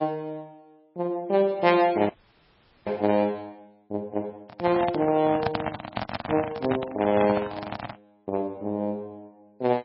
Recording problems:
lossy compression; MP3, log-spectral distance 3 dB, nothing above 4.5 kHz
audio freezing; at 2 s for 1 s
microphone handling noise; from 4.5 to 8 s; peak +2 dB vs average level

